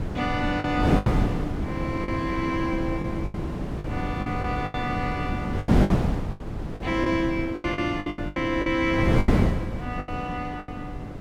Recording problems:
wind noise; below 300 Hz, SNR -1 dB
lost packets; 12% of the sound replaced, filled with the last packet

